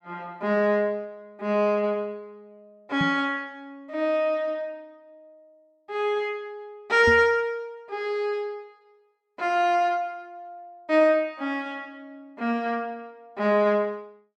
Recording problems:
microphone bump; at 3 s and at 7 s; peak 0 dB vs average level

